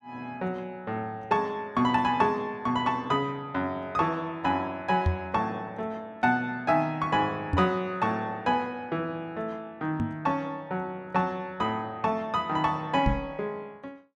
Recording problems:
microphone bump; 4 times, first at 5 s; peak +6 dB vs average level

